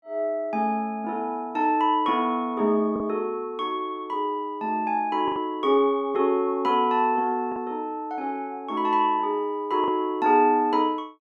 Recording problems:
packet loss; 1.8% of the sound replaced, filled with the last packet

